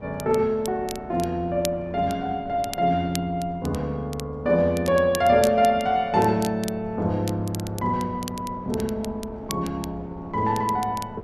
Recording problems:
wind noise; below 540 Hz, SNR 19 dB
crackling; vinyl, SNR 16 dB

